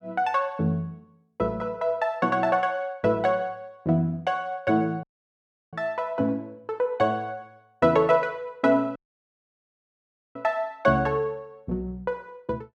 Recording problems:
dropout; at 5 s for 0.5 s and at 9 s for 1.5 s

